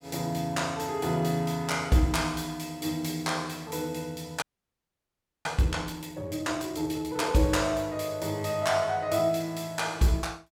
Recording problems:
audio freezing; at 4.5 s for 1 s

